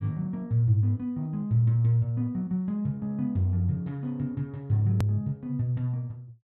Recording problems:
click at an edit; at 5 s

